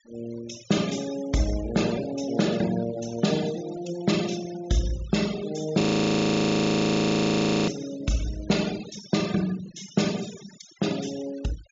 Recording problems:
treble cut off; nothing above 7.3 kHz
denoising artefacts; signal-to-artefact ratio 15 dB
frozen audio; at 6 s for 2 s

